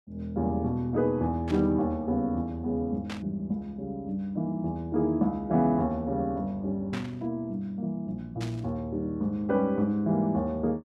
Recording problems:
static burst; 4 times, first at 1.5 s; peak -5 dB vs average level

